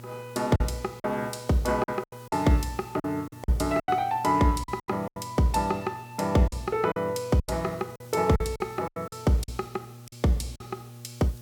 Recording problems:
hum; 60 Hz, harmonics up to 840 Hz, SNR 19 dB
hiss; SNR 26 dB
packet loss; 11% of the sound replaced, filled with silence

